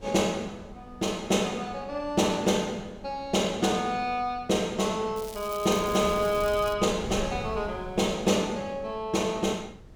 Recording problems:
wind noise; below 220 Hz, SNR 18 dB
crackle; from 5 to 7 s; loose cable, SNR 16 dB

